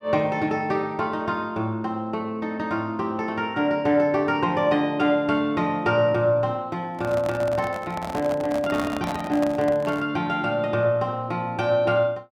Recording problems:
handling noise; from 7 to 10 s; peak -3 dB vs average level

